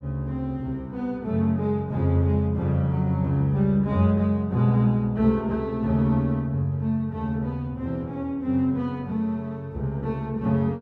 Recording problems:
none

